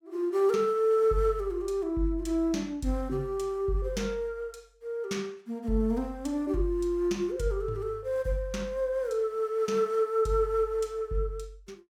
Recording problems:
none

